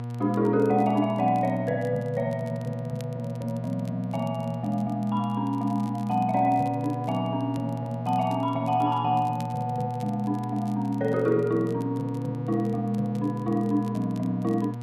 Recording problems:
hum; 60 Hz, harmonics up to 1.2 kHz, SNR 7 dB
crackle; vinyl, SNR 28 dB

